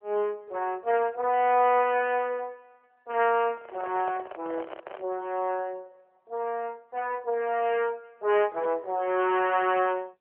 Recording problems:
telephone audio; 320 Hz to 3.1 kHz, AMR-NB
handling noise; from 3.5 to 5 s; peak -8 dB vs average level

